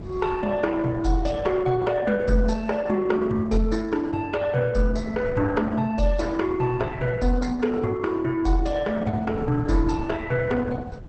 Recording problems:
lossy compression; Opus, log-spectral distance 3 dB, nothing above 8.2 kHz
wind on the microphone; below 200 Hz, SNR 15 dB

